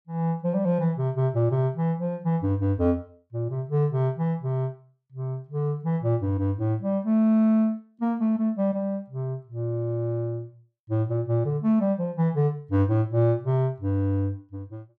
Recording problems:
none

